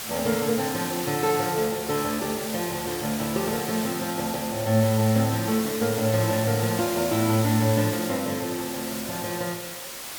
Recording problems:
background hiss; slope 0 dB per octave, SNR 7 dB

